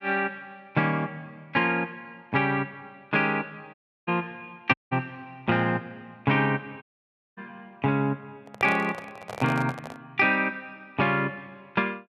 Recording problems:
audio cutting out; at 3.5 s, at 4.5 s and at 7 s for 0.5 s
microphone handling noise; from 8.5 to 10 s; peak -3 dB vs average level

